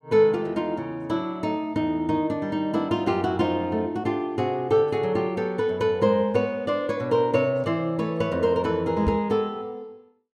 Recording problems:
microphone bump; at 9 s; peak +2 dB vs average level

